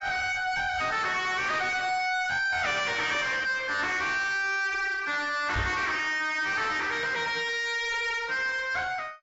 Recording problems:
lossy compression; AAC, log-spectral distance 4 dB, nothing above 7.6 kHz
distorted audio; soft clipping, signal-to-distortion ratio 7 dB
microphone bump; at 5.5 s; peak +2 dB vs average level

